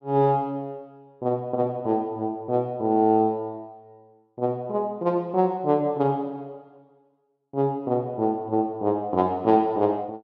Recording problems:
none

